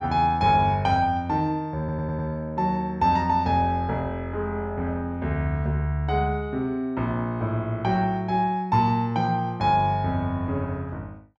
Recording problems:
audio stuttering; at 2 s

